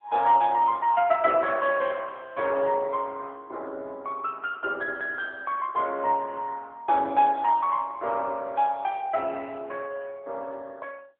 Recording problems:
telephone audio; 300 Hz to 3.4 kHz, AMR-NB

